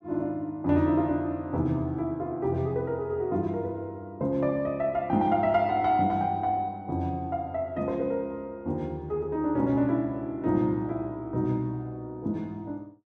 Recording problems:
none

